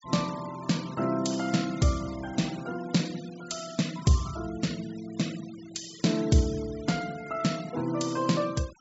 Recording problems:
treble cut off; nothing above 8 kHz
denoising artefacts; signal-to-artefact ratio 17 dB

